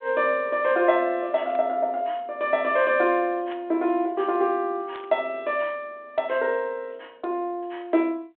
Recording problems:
phone line; 220 Hz to 3.6 kHz, G.726
static burst; at 1.5 s, at 3.5 s and at 5 s; peak -16 dB vs average level

